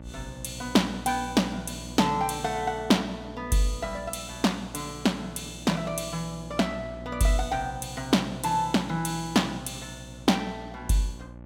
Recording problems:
electrical hum; 60 Hz, harmonics up to 1.1 kHz, SNR 15 dB

